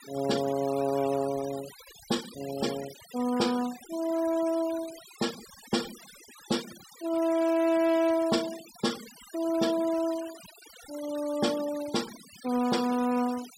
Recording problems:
denoising artefacts; signal-to-artefact ratio 15 dB

